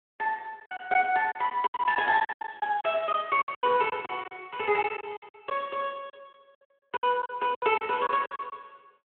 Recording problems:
telephone audio; 280 Hz to 3.3 kHz, Speex
lost packets; 15% of the sound replaced, filled with silence

